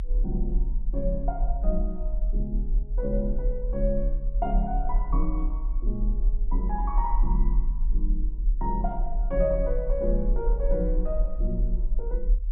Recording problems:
low-pass filter; nothing above 4 kHz
rumble; below 42 Hz, strongest tone 36 Hz, SNR -3 dB

